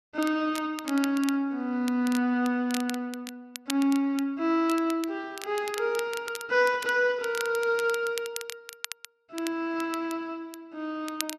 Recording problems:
crackle; vinyl, SNR 13 dB

